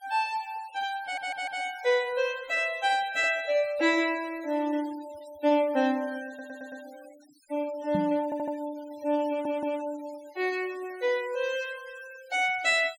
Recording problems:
denoising artefacts; signal-to-artefact ratio 22 dB
stutter; 4 times, first at 1 s
microphone bump; at 8 s; peak 0 dB vs average level

